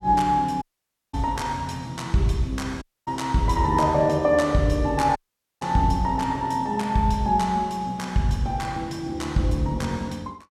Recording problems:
dropout; at 0.5 s for 0.5 s, at 3 s and at 5 s

